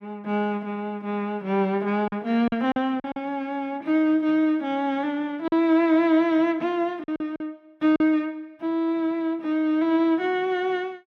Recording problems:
packet loss; 4% of the sound replaced, filled with silence

